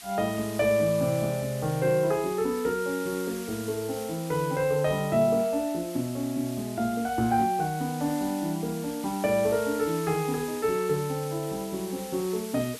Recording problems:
background hiss; SNR 14 dB

